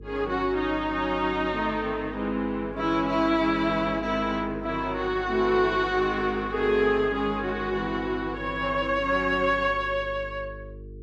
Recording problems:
mains hum; 50 Hz, harmonics up to 450 Hz, SNR 17 dB

